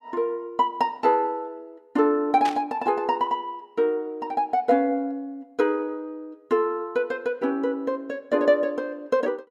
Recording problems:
static burst; at 2.5 s; peak -4 dB vs average level

